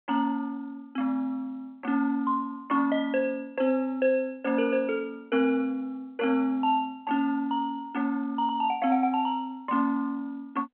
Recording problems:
phone line; 240 Hz to 3.2 kHz, G.711

